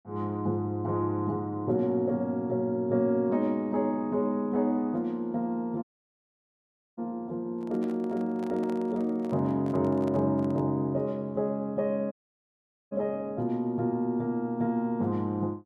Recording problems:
audio cutting out; at 6 s for 1 s and at 12 s for 1 s
handling noise; from 7.5 to 11 s; peak -11 dB vs average level

